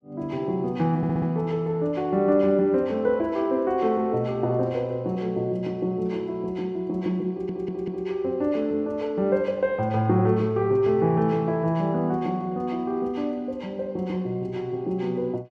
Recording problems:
audio stuttering; at 1 s and at 7.5 s

